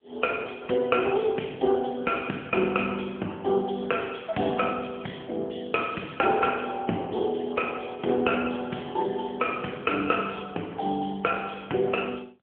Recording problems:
telephone audio; 260 Hz to 3.3 kHz, AMR-NB

